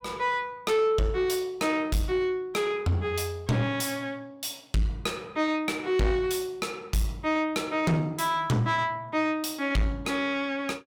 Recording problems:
distortion; soft clipping, signal-to-distortion ratio 8 dB

